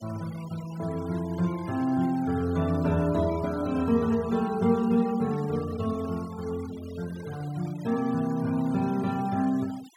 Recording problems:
denoising artefacts; signal-to-artefact ratio 20 dB

